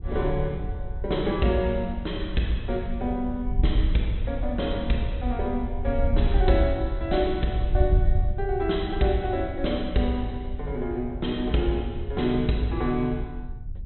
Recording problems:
low-pass filter; nothing above 4.1 kHz
wind on the microphone; below 70 Hz, SNR 4 dB

